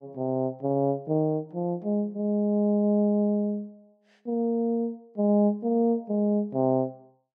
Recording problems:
none

